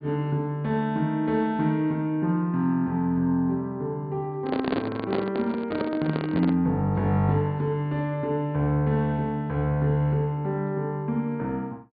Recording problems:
treble missing; nothing above 4.7 kHz
microphone handling noise; from 4.5 to 6.5 s; peak +3 dB vs average level

